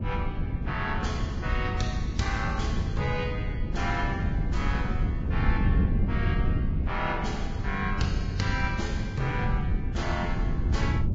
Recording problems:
codec artefacts; Vorbis, log-spectral distance 2 dB, nothing above 7.3 kHz
wind on the microphone; below 140 Hz, SNR -3 dB

